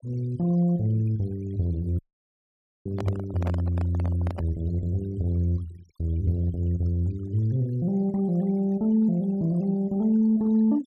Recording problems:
noise reduction artefacts; signal-to-artefact ratio 26 dB
dropout; at 2 s for 1 s
microphone handling noise; from 3 to 4.5 s; peak -5 dB vs average level

